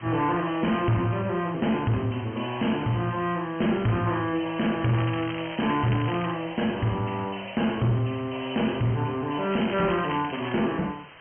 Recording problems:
low-pass filter; nothing above 3.2 kHz
distortion; soft clipping, signal-to-distortion ratio 10 dB
hiss; SNR 20 dB
crackle; from 5 to 6.5 s and from 9.5 to 11 s; loose cable, SNR 12 dB

